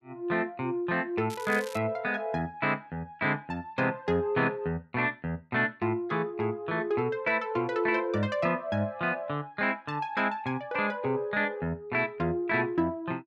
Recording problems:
crackle; at 1.5 s; loose cable, SNR 17 dB

